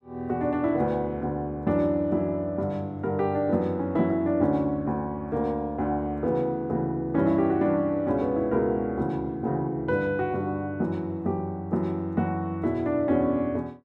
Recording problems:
none

